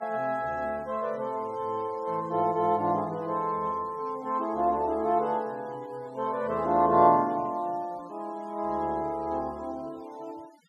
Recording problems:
denoising artefacts; signal-to-artefact ratio 26 dB

